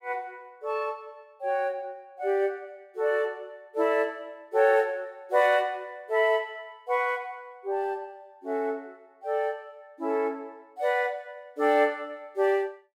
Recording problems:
none

